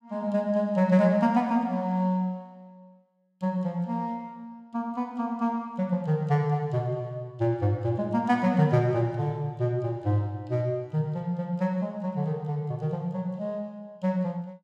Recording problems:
none

